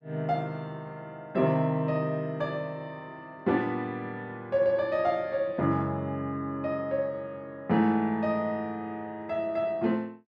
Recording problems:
none

